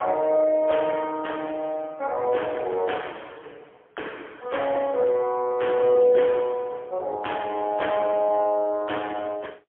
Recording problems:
phone line; 320 Hz to 3.3 kHz, AMR-NB, then MP3

